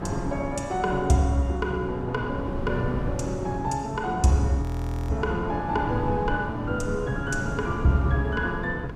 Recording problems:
wind noise; below 260 Hz, SNR 7 dB
audio freezing; at 4.5 s

